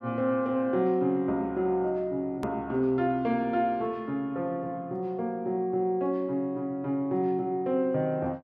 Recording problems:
click at an edit; at 2.5 s

